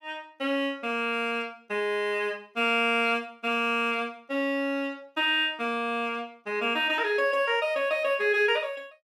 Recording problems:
none

